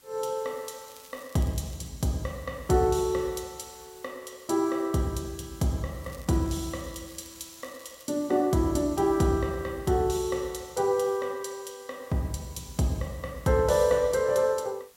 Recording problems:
hiss; slope 0 dB per octave, SNR 25 dB
crackle; at 1 s and from 6 to 8 s; loose cable, SNR 24 dB

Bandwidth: 16 kHz